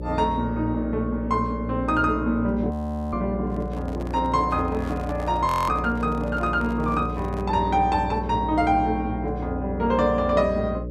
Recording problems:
hum; 60 Hz, harmonics up to 600 Hz, SNR 7 dB
audio freezing; at 2.5 s and at 5.5 s
handling noise; from 3.5 to 7.5 s; peak -10 dB vs average level

